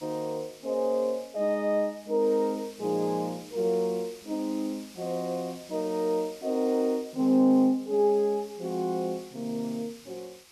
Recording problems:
background hiss; slope +1 dB per octave, SNR 21 dB

